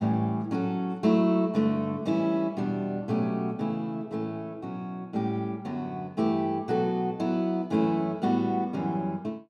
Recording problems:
none

